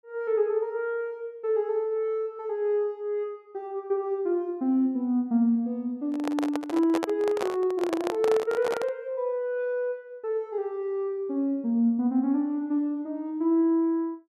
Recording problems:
handling noise; from 6 to 9 s; peak +1 dB vs average level

